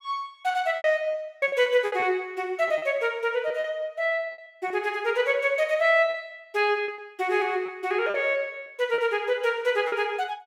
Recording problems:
packet loss; 8% of the sound replaced, filled with repeated pitch periods

